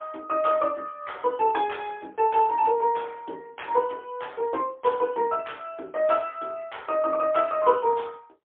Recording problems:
telephone audio; 240 Hz to 3.5 kHz, AMR-NB, then MP3

